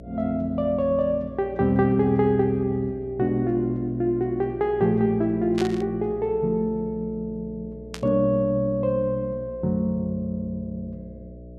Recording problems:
hum; 60 Hz, harmonics up to 660 Hz, SNR 18 dB
burst of static; at 5.5 s and at 8 s; peak -6 dB vs average level

